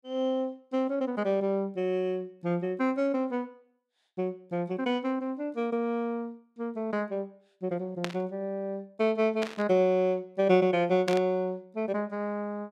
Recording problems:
burst of static; at 8 s, at 9.5 s and at 11 s; peak 0 dB vs average level

